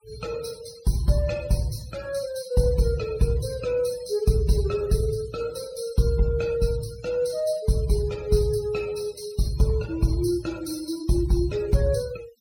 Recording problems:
noise reduction artefacts; signal-to-artefact ratio 18 dB

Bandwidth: 16.5 kHz